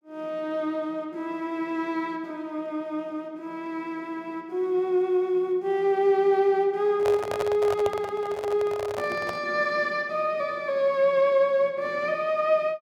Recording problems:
handling noise; from 7 to 9.5 s; peak -1 dB vs average level

